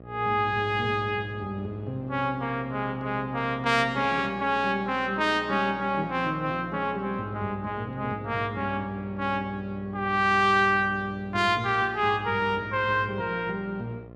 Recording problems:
hum; 60 Hz, harmonics up to 1.3 kHz, SNR 19 dB

